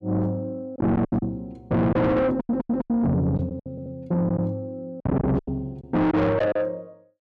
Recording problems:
distorted audio; soft clipping, signal-to-distortion ratio 6 dB
packet loss; 10% of the sound replaced, filled with silence
audio stuttering; at 2.5 s and at 3.5 s

